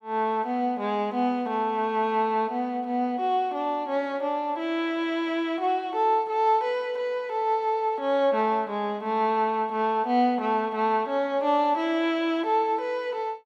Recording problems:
none

